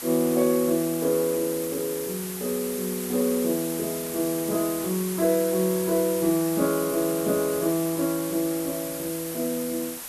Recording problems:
background hiss; slope -1 dB per octave, SNR 7 dB

